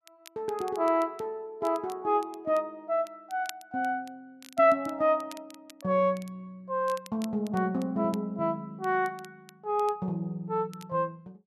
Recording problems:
crackling; vinyl, SNR 23 dB

